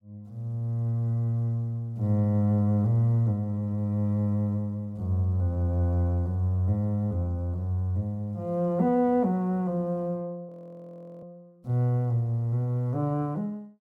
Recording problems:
audio freezing; at 10 s for 0.5 s

